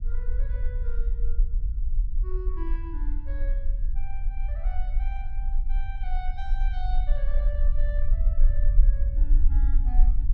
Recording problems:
low-frequency rumble; below 40 Hz, strongest tone 24 Hz, SNR -16 dB

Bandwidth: 13 kHz